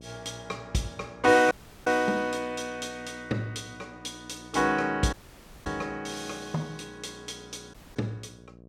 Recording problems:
hum; 60 Hz, harmonics up to 720 Hz, SNR 21 dB
audio cutting out; at 1.5 s, at 5 s for 0.5 s and at 7.5 s

